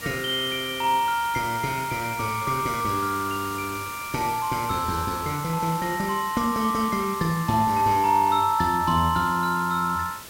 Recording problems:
hiss; slope -1 dB per octave, SNR 13 dB

